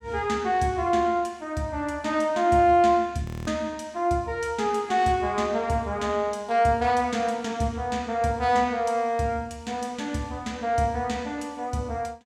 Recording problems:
frozen audio; at 3.5 s

